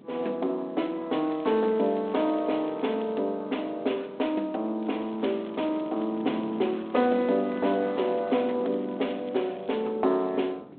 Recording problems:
phone line; 240 Hz to 3.7 kHz, G.726
wind noise; below 400 Hz, SNR 19 dB
crackle; from 1.5 to 3 s and from 5 to 9.5 s; loose cable, SNR 28 dB

